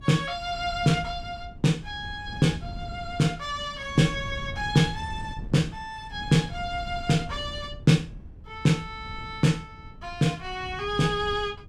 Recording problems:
wind on the microphone; below 150 Hz, SNR 14 dB

